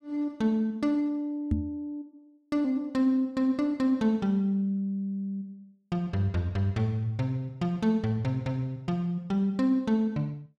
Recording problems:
knock on the microphone; at 1.5 s; peak +5 dB vs average level

